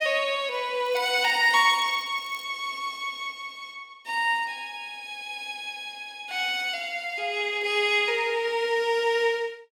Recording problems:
crackle; from 1 to 2.5 s; loose cable, SNR 24 dB

